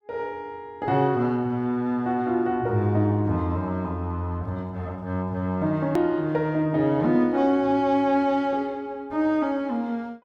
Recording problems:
click at an edit; at 6 s

